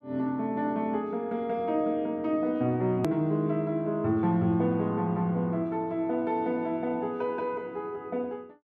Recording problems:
click at an edit; at 3 s

